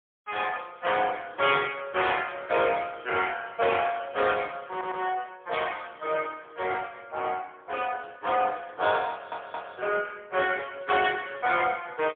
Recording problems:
phone line; 280 Hz to 3.4 kHz, AMR-NB, then MP3
stutter; at 4.5 s and at 9 s

